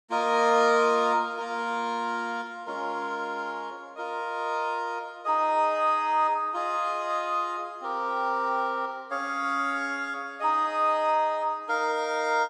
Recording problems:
none

